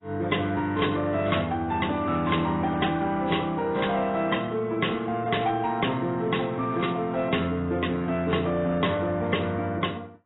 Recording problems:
lossy codec; AAC, log-spectral distance 4 dB, nothing above 3.8 kHz
distortion; soft clipping, signal-to-distortion ratio 11 dB

